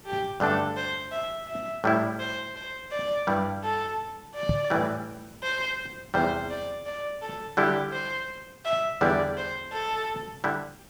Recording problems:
background hiss; SNR 22 dB
microphone bump; at 4.5 s; peak +6 dB vs average level

